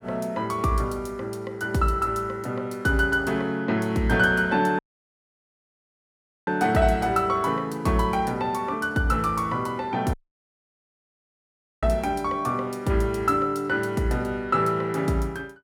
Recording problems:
dropout; at 5 s for 1.5 s and at 10 s for 1.5 s

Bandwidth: 17 kHz